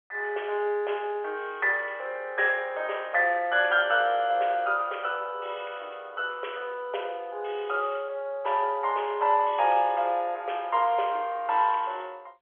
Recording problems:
phone line; 370 Hz to 3.4 kHz, G.711

